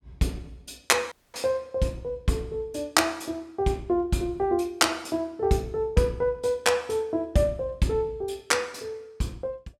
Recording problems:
audio cutting out; at 1 s

